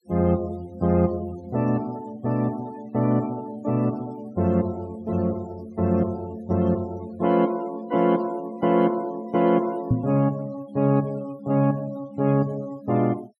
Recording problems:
denoising artefacts; signal-to-artefact ratio 22 dB
knock on the microphone; at 10 s; peak +7 dB vs average level

